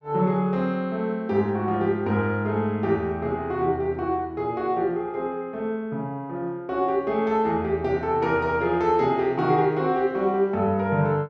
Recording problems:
none

